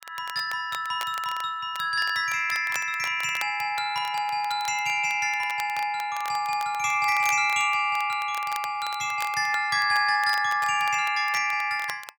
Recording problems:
crackling; vinyl, SNR 17 dB

